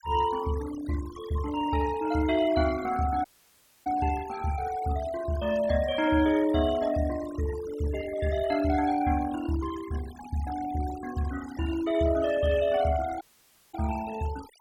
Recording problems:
noise reduction artefacts; signal-to-artefact ratio 15 dB
audio cutting out; at 3.5 s for 0.5 s and at 13 s for 0.5 s

